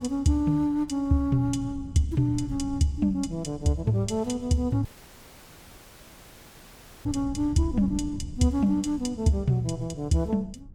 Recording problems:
wind on the microphone; below 130 Hz, SNR 15 dB
dropout; at 5 s for 2 s

